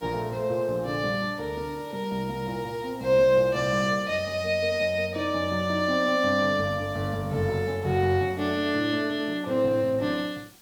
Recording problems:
background hiss; SNR 27 dB

